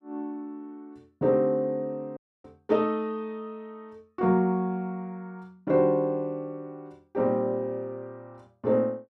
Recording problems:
dropout; at 2 s

